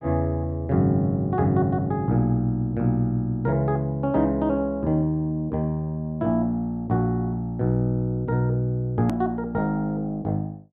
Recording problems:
hard cut with a click; at 9 s

